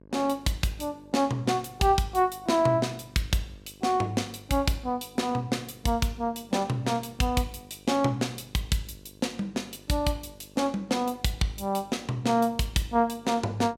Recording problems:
hum; 50 Hz, harmonics up to 1.1 kHz, SNR 25 dB

